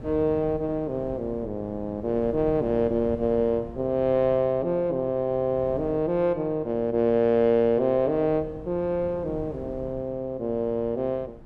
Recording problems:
wind on the microphone; below 300 Hz, SNR 18 dB

